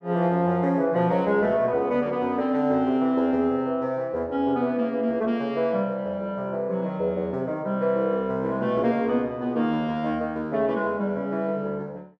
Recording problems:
none

